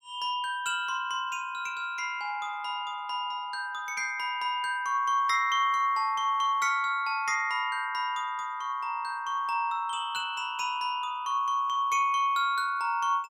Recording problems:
none

